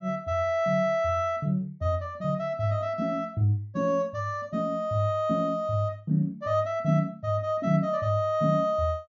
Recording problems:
low-pass filter; nothing above 6.9 kHz

